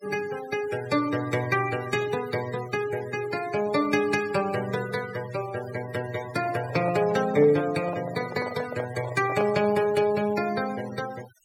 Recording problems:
noise reduction artefacts; signal-to-artefact ratio 15 dB
handling noise; from 6.5 to 10 s; peak -2 dB vs average level

